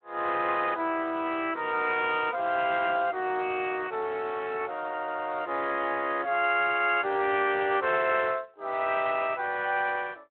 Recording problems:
telephone audio; 280 Hz to 3.3 kHz, Speex

